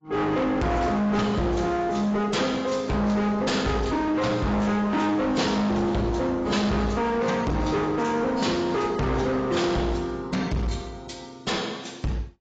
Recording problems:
lossy codec; AAC, log-spectral distance 3 dB, nothing above 7.6 kHz
distortion; hard clipping, uneven, signal-to-distortion ratio 6 dB

